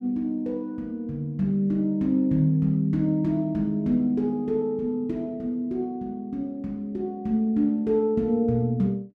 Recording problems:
none

